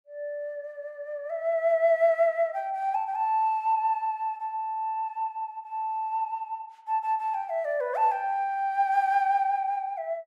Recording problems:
none

